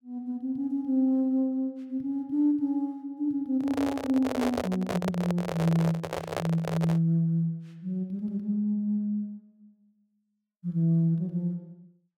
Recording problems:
handling noise; from 3.5 to 7 s; peak +1 dB vs average level

